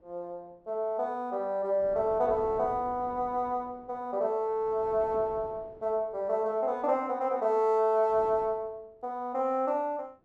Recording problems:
wind on the microphone; below 570 Hz, SNR 20 dB

